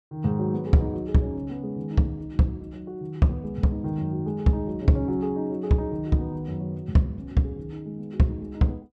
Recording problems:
none

